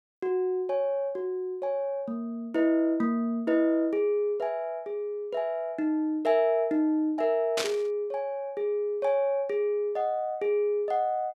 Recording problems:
burst of static; at 7.5 s; peak +2 dB vs average level

